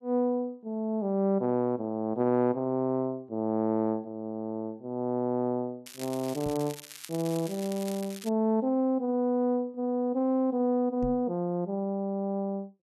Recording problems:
crackling; from 6 to 8.5 s; loose cable, SNR 15 dB
microphone bump; at 6.5 s and at 11 s; peak -2 dB vs average level

